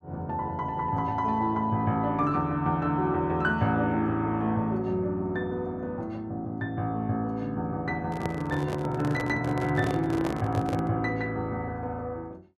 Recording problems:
handling noise; from 8 to 11 s; peak -1 dB vs average level

